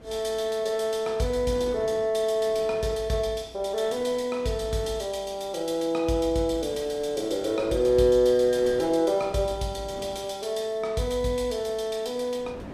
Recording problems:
wind on the microphone; below 620 Hz, SNR 21 dB

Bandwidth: 14.5 kHz